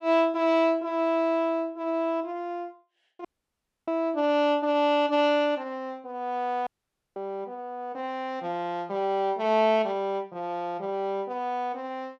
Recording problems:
audio cutting out; at 3.5 s for 0.5 s and at 6.5 s

